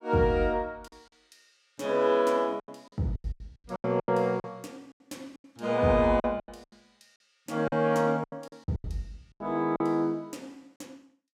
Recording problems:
packet loss; 12% of the sound replaced, filled with silence

